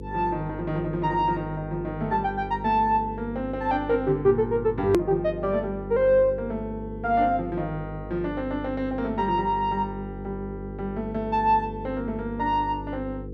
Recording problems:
hum; 50 Hz, harmonics up to 500 Hz, SNR 12 dB
click at an edit; at 5 s

